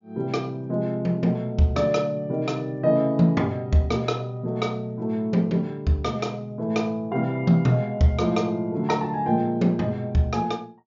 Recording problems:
treble missing; nothing above 7.2 kHz

